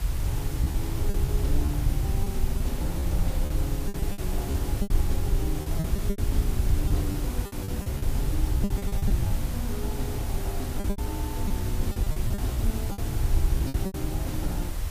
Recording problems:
hiss; slope -3 dB per octave, SNR 4 dB
low-frequency rumble; below 84 Hz, SNR -6 dB
lost packets; 11% of the sound replaced, filled with repeated pitch periods

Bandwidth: 15 kHz